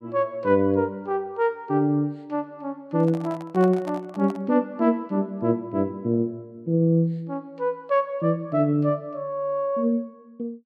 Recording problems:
microphone handling noise; from 3 to 4.5 s; peak -8 dB vs average level

